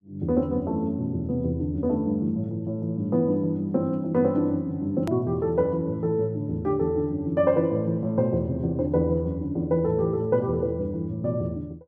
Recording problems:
edit click; at 5 s

